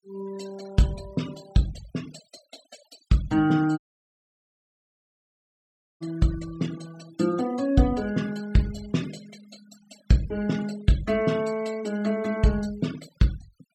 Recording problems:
noise reduction artefacts; signal-to-artefact ratio 19 dB
audio cutting out; at 4 s for 2 s

